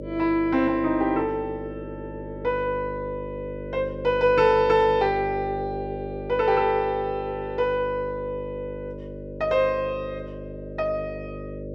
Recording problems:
mains hum; 50 Hz, harmonics up to 600 Hz, SNR 11 dB

